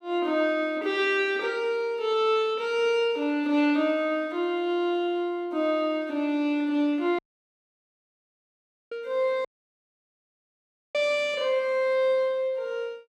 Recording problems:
audio cutting out; at 7 s for 1.5 s and at 9.5 s for 1.5 s

